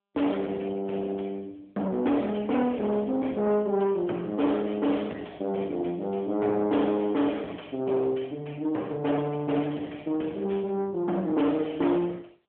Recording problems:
phone line; 300 Hz to 2.8 kHz, AMR-NB
distortion; soft clipping, signal-to-distortion ratio 9 dB

